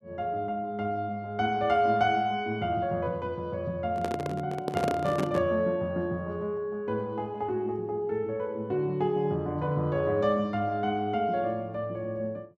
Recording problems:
microphone handling noise; from 4 to 5.5 s; peak +3 dB vs average level

